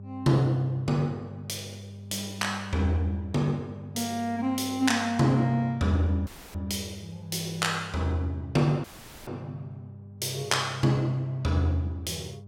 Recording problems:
hum; 50 Hz, harmonics up to 600 Hz, SNR 16 dB
dropout; at 6.5 s and at 9 s

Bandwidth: 16.5 kHz